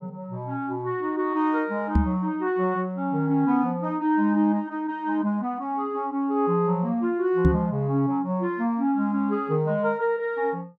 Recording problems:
knock on the microphone; at 2 s and at 7.5 s; peak +7 dB vs average level

